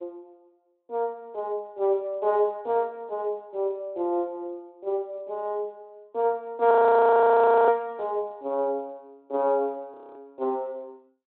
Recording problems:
telephone audio; 240 Hz to 3.9 kHz, Speex
audio freezing; at 6.5 s for 1 s and at 10 s

